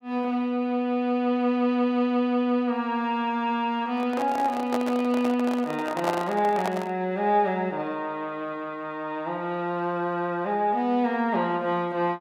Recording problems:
handling noise; from 4 to 7 s; peak 0 dB vs average level

